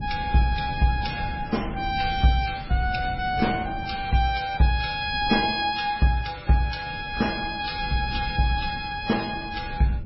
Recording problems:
lossy compression; AAC, then MP3, log-spectral distance 4 dB, nothing above 5 kHz
wind on the microphone; below 150 Hz, SNR 12 dB

